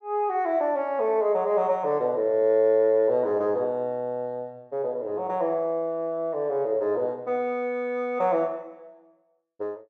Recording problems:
none

